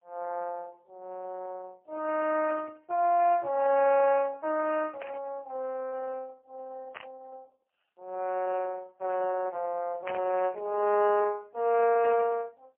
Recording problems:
telephone audio; 340 Hz to 2.7 kHz, AMR-NB, then MP3
burst of static; 5 times, first at 2.5 s; peak -8 dB vs average level

